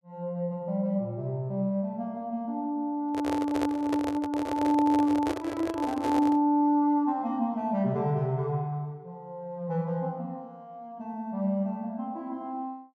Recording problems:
handling noise; from 3 to 6.5 s; peak 0 dB vs average level

